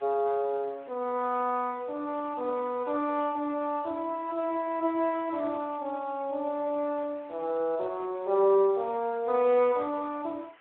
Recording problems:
telephone audio; 300 Hz to 3.2 kHz, Speex
background hiss; SNR 27 dB

